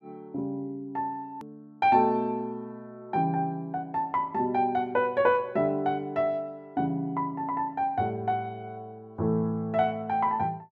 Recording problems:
click at an edit; at 1.5 s

